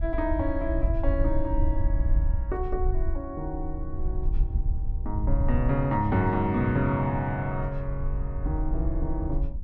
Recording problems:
wind noise; below 66 Hz, SNR 2 dB

